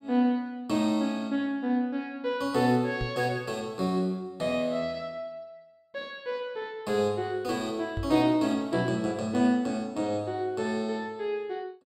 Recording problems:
microphone bump; at 3 s and at 8 s; peak -1 dB vs average level

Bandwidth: 16.5 kHz